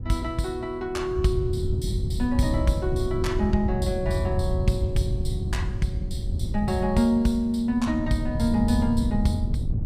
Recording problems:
wind noise; below 120 Hz, SNR 3 dB

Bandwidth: 15.5 kHz